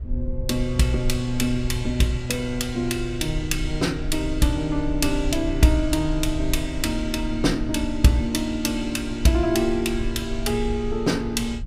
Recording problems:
rumble; below 64 Hz, SNR 9 dB

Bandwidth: 15.5 kHz